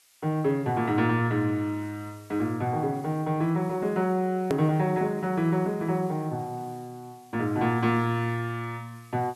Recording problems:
hiss; slope +3 dB per octave, SNR 28 dB
click at an edit; at 4.5 s

